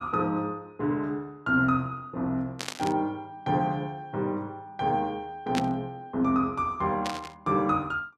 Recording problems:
static burst; at 2.5 s, at 5.5 s and at 7 s; peak +1 dB vs average level

